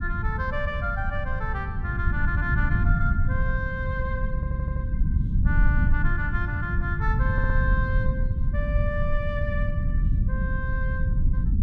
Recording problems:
rumble; below 100 Hz, SNR -5 dB
audio stuttering; at 4.5 s and at 7.5 s

